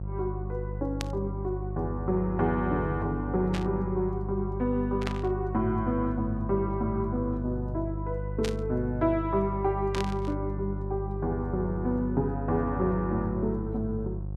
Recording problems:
hum; 50 Hz, harmonics up to 550 Hz, SNR 5 dB
burst of static; 5 times, first at 1 s; peak 0 dB vs average level

